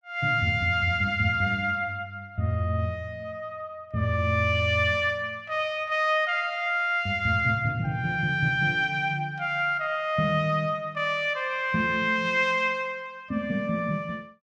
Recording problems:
none

